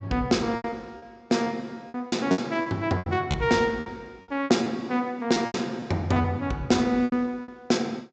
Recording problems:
low-pass filter; nothing above 8 kHz
lost packets; 12% of the sound replaced, filled with repeated pitch periods

